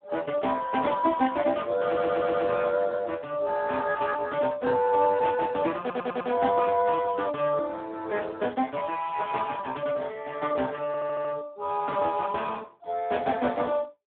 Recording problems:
telephone audio; 190 Hz to 2.1 kHz, Speex
audio stuttering; at 2 s, at 6 s and at 11 s

